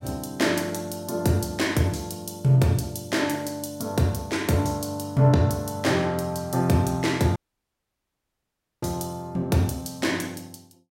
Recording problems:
dropout; at 7.5 s for 1.5 s

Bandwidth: 16 kHz